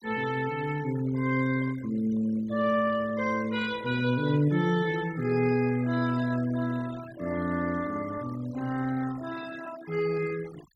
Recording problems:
noise reduction artefacts; signal-to-artefact ratio 18 dB

